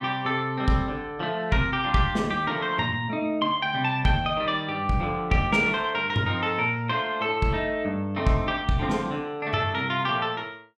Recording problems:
none

